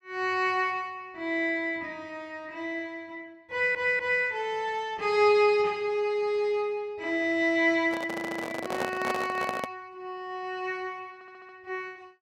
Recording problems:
audio stuttering; at 3.5 s, at 8 s and at 11 s
handling noise; from 8 to 9.5 s; peak 0 dB vs average level

